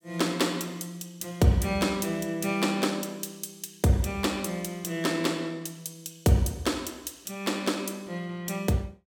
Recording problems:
none

